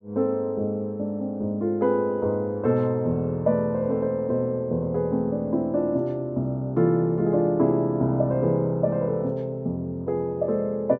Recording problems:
none

